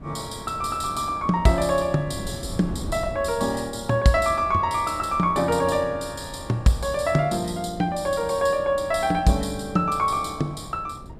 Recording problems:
wind noise; below 260 Hz, SNR 16 dB

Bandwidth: 14.5 kHz